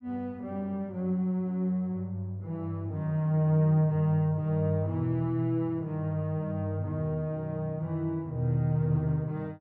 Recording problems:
none

